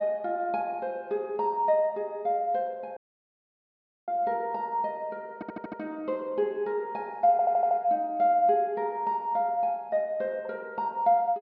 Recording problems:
low-pass filter; nothing above 5.5 kHz
audio cutting out; at 3 s for 1 s
stutter; at 5.5 s and at 7.5 s

